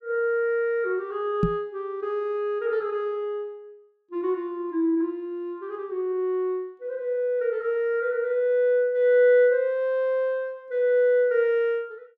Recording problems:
microphone thump; at 1.5 s; peak +5 dB vs average level

